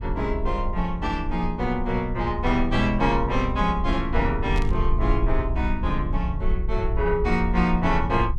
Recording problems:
rumble; below 60 Hz, SNR 4 dB
burst of static; at 4.5 s; peak -10 dB vs average level

